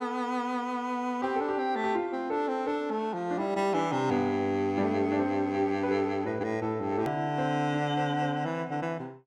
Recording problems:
click at an edit; at 7 s

